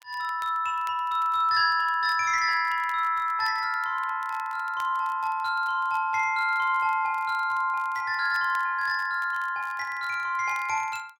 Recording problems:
crackling; vinyl, SNR 27 dB

